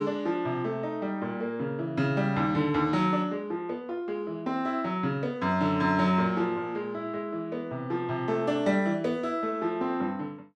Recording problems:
none

